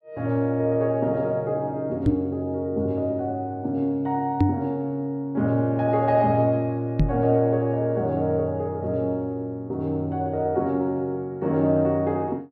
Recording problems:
knock on the microphone; at 2 s, at 4.5 s and at 7 s; peak +7 dB vs average level

